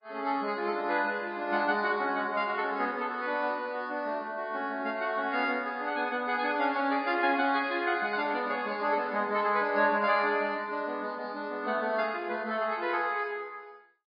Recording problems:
codec artefacts; MP3, log-spectral distance 2 dB, nothing above 4.1 kHz

